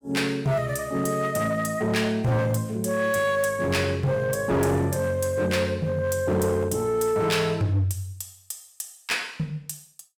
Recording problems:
distorted audio; hard clipping, signal-to-distortion ratio 11 dB

